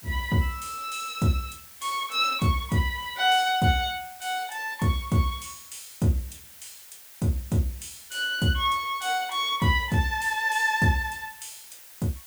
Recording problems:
hiss; slope +2 dB per octave, SNR 19 dB

